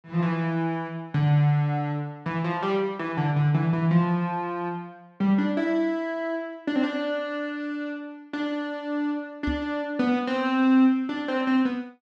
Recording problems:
microphone thump; at 9.5 s; peak -1 dB vs average level

